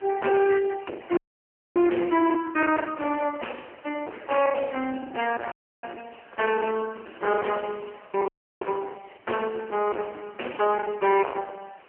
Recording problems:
telephone audio; 260 Hz to 2.9 kHz, AMR-NB
distorted audio; hard clipping, signal-to-distortion ratio 3 dB
hiss; SNR 27 dB
lost packets; 14% of the sound replaced, filled with the last packet
dropout; at 1 s for 0.5 s, at 5.5 s and at 8.5 s

